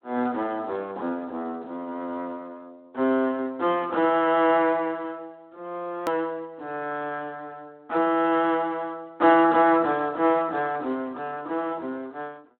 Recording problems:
phone line; 220 Hz to 4 kHz, Speex
hard cut with a click; at 6 s

